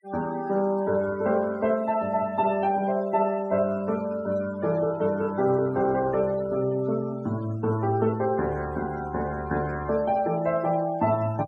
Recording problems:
noise reduction artefacts; signal-to-artefact ratio 21 dB

